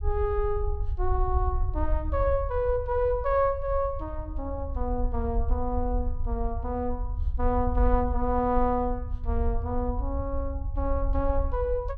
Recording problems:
low-frequency rumble; below 66 Hz, SNR 3 dB

